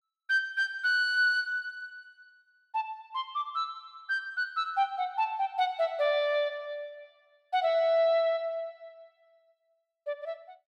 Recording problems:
none

